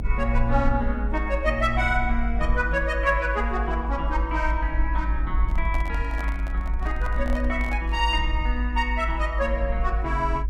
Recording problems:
rumble; below 54 Hz, strongest tone 54 Hz, SNR 1 dB
microphone handling noise; from 5.5 to 8 s; peak -7 dB vs average level

